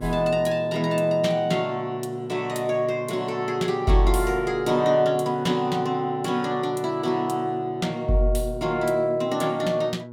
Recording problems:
hum; 60 Hz, harmonics up to 1.1 kHz, SNR 15 dB

